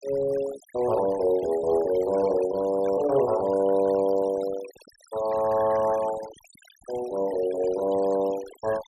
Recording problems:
noise reduction artefacts; signal-to-artefact ratio 18 dB

